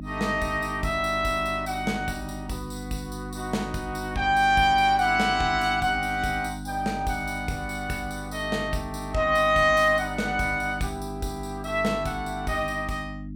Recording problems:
mains hum; 50 Hz, harmonics up to 300 Hz, SNR 12 dB

